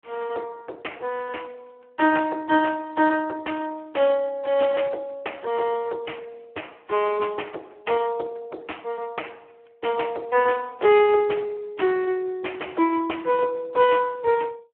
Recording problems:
phone line; 280 Hz to 3.2 kHz, Speex

